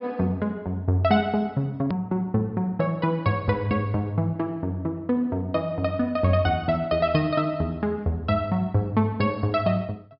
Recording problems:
treble cut off; nothing above 5.5 kHz
click at an edit; at 2 s

